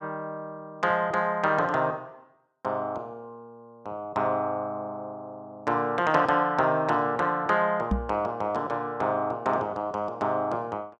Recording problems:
microphone bump; at 8 s; peak +4 dB vs average level

